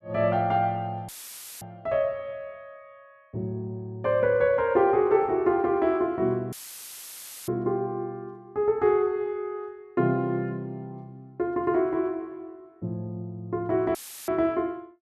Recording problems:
audio cutting out; at 1 s for 0.5 s, at 6.5 s for 1 s and at 14 s; filled with static

